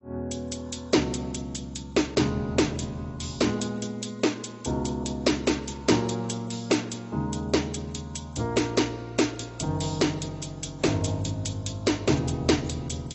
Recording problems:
lossy compression; AAC, log-spectral distance 6 dB, nothing above 7.8 kHz

